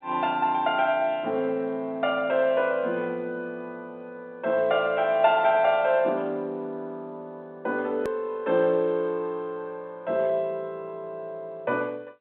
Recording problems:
telephone audio; 220 Hz to 4 kHz, G.711
hard cut with a click; at 8 s

